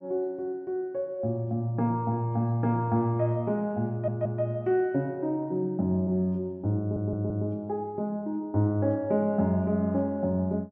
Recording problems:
audio stuttering; at 4 s and at 7 s

